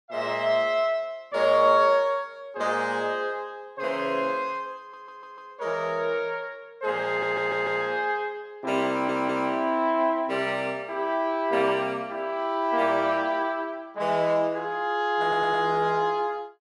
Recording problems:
audio stuttering; 4 times, first at 5 s

